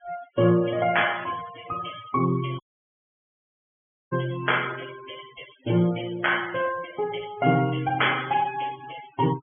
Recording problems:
low-pass filter; nothing above 3.4 kHz
noise reduction artefacts; signal-to-artefact ratio 15 dB
audio cutting out; at 2.5 s for 1.5 s

